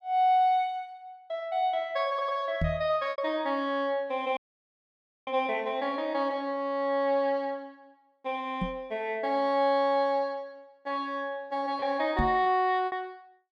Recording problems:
lost packets; 1.6% of the sound replaced, filled with repeated pitch periods
audio stuttering; at 2 s
microphone bump; at 2.5 s, at 8.5 s and at 12 s; peak +3 dB vs average level
dropout; at 4.5 s for 1 s

